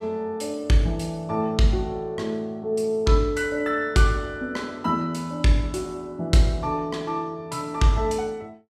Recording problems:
none

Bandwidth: 14.5 kHz